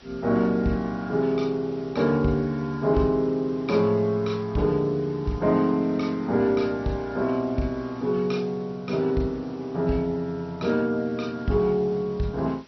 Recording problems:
lossy compression; MP2, then Vorbis, log-spectral distance 3 dB, nothing above 5.8 kHz
background hiss; slope -2 dB per octave, SNR 27 dB

